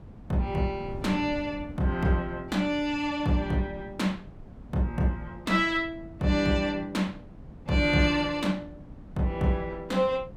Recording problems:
wind noise; below 230 Hz, SNR 18 dB

